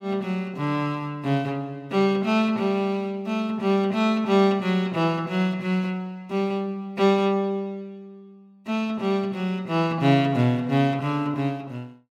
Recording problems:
none

